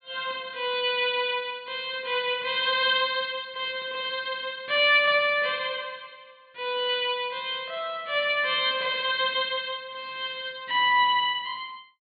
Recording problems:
treble missing; nothing above 4.5 kHz

